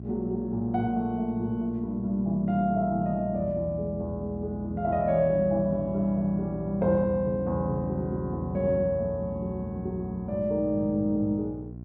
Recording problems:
electrical hum; 60 Hz, harmonics up to 660 Hz, SNR 12 dB

